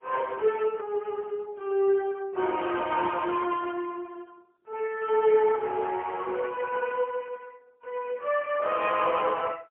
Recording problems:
phone line; 320 Hz to 3.1 kHz, AMR-NB, then MP3

